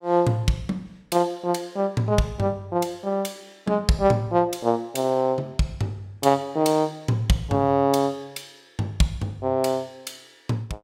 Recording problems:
none

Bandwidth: 16 kHz